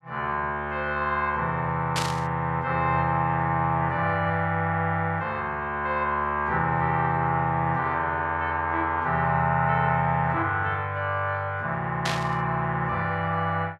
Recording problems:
static burst; at 2 s and at 12 s; peak +1 dB vs average level

